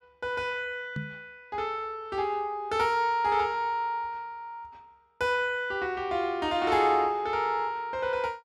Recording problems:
microphone thump; at 1 s; peak -3 dB vs average level

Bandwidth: 14 kHz